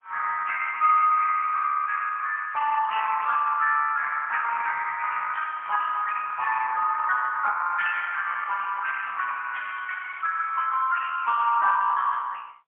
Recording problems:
telephone audio; 190 Hz to 3.1 kHz, AMR-NB, then MP3

